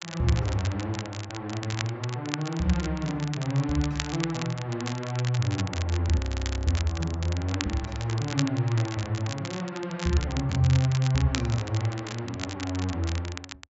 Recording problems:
treble cut off; nothing above 8 kHz
crackle; vinyl, SNR 10 dB
audio freezing; at 6 s

